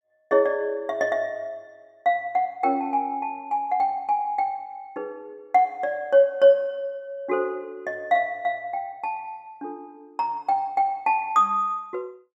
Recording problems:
none

